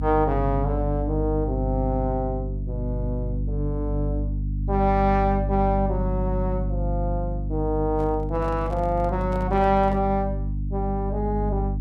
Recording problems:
electrical hum; 50 Hz, harmonics up to 300 Hz, SNR 2 dB
microphone handling noise; from 8 to 10 s; peak -10 dB vs average level

